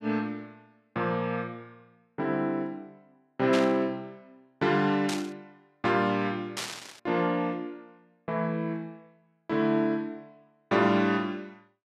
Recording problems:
static burst; at 3.5 s, at 5 s and at 6.5 s; peak 0 dB vs average level

